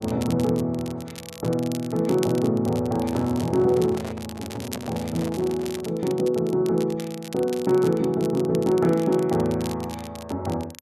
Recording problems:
crackling; vinyl, SNR 17 dB
handling noise; from 3 to 6 s; peak -9 dB vs average level

